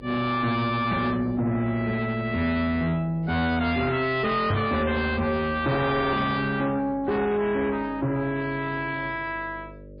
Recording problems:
lossy codec; MP3, log-spectral distance 2 dB, nothing above 4.1 kHz
distortion; soft clipping, signal-to-distortion ratio 8 dB
hum; 50 Hz, harmonics up to 600 Hz, SNR 20 dB
microphone bump; at 4.5 s; peak +4 dB vs average level

